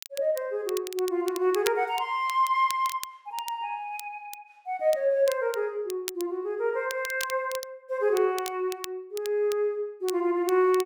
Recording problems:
crackling; vinyl, SNR 14 dB

